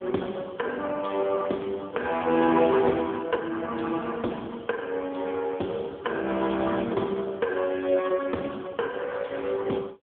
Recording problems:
telephone audio; 260 Hz to 3.3 kHz, AMR-NB

